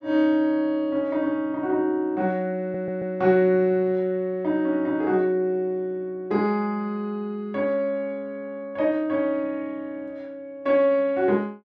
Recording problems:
stutter; at 2.5 s

